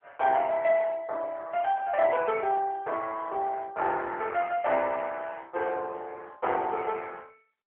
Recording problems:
telephone audio; 340 Hz to 3.6 kHz, AMR-NB

